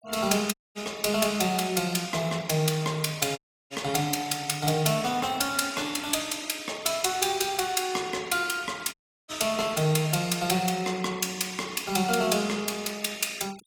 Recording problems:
noise reduction artefacts; signal-to-artefact ratio 21 dB
audio cutting out; at 0.5 s, at 3.5 s and at 9 s

